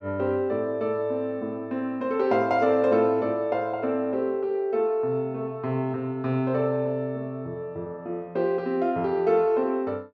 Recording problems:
none

